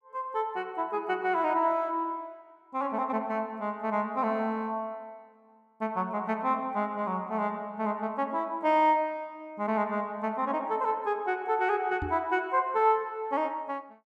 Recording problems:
knock on the microphone; at 12 s; peak -2 dB vs average level

